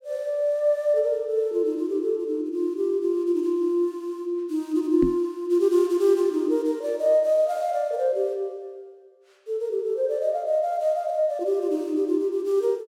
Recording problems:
microphone bump; at 5 s; peak +3 dB vs average level

